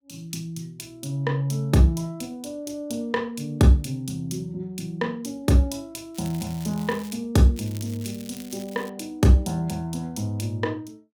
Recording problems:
crackling; at 6 s and from 7.5 to 9 s; loose cable, SNR 20 dB

